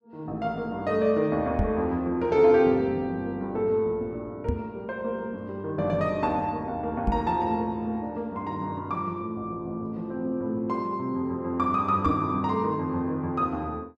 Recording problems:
knock on the microphone; 4 times, first at 1.5 s; peak +5 dB vs average level

